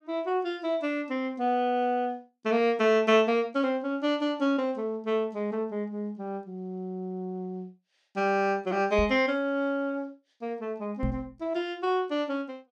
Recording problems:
knock on the microphone; at 9 s and at 11 s; peak +1 dB vs average level

